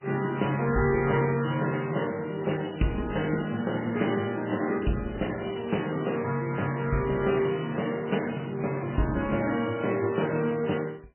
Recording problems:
lossy codec; AAC, then MP3, log-spectral distance 9 dB, nothing above 2.8 kHz

